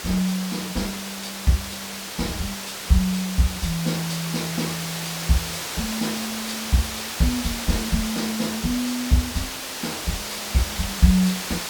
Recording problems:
hiss; slope -1 dB per octave, SNR 4 dB

